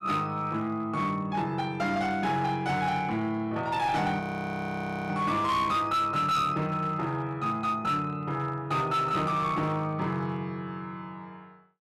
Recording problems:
distortion; hard clipping, uneven, signal-to-distortion ratio 12 dB
audio freezing; at 4 s for 1 s

